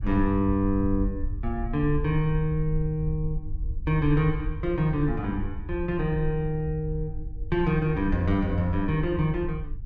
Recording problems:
rumble; below 64 Hz, SNR 8 dB

